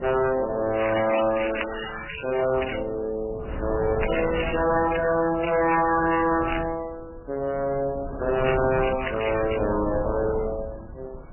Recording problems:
lossy compression; MP3, then MP3, log-spectral distance 12 dB, nothing above 2.4 kHz
distortion; hard clipping, uneven, signal-to-distortion ratio 6 dB
wind noise; below 430 Hz, SNR 12 dB
crackle; from 1 to 3 s, from 4 to 6.5 s and from 8.5 to 9.5 s; loose cable, SNR 6 dB

